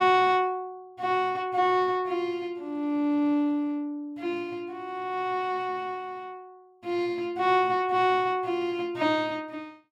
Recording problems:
none

